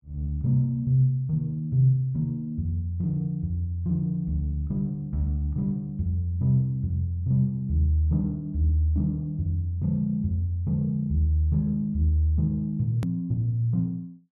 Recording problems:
click at an edit; at 13 s

